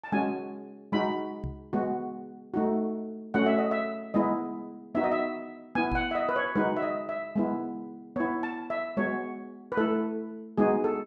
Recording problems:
microphone bump; at 1.5 s and at 6 s; peak -2 dB vs average level

